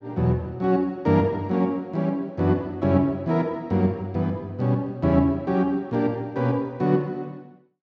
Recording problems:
none

